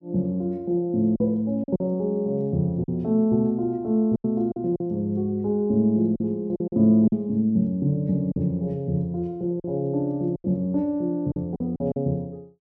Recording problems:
packet loss; 6% of the sound replaced, filled with silence

